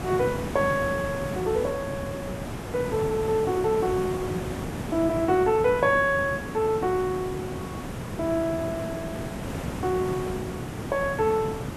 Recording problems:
hiss; slope -7 dB per octave, SNR 7 dB

